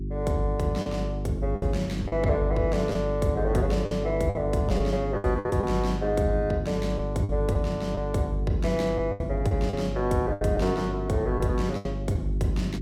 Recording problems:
hum; 50 Hz, harmonics up to 400 Hz, SNR 5 dB
lost packets; 7% of the sound replaced, filled with the last packet

